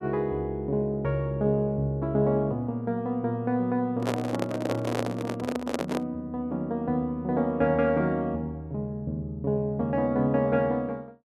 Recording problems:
handling noise; from 4 to 6 s; peak +2 dB vs average level

